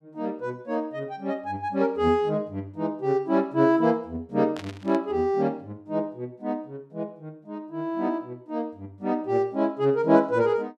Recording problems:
static burst; at 4.5 s; peak -10 dB vs average level

